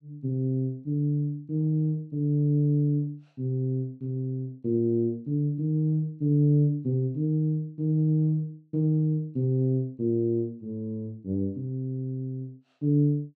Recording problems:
none

